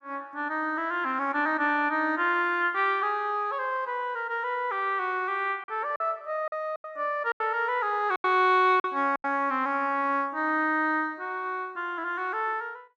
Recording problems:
lost packets; 4% of the sound replaced, filled with silence

